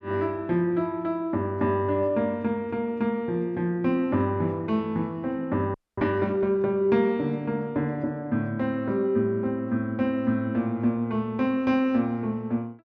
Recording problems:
frozen audio; at 5.5 s

